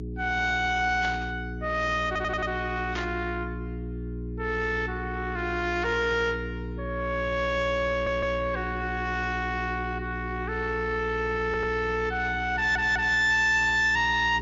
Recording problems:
lossy compression; MP3, then MP3, log-spectral distance 2 dB, nothing above 6.2 kHz
distorted audio; soft clipping, signal-to-distortion ratio 11 dB
electrical hum; 60 Hz, harmonics up to 420 Hz, SNR 9 dB
burst of static; at 1 s and at 3 s; peak -5 dB vs average level
audio stuttering; 4 times, first at 2 s

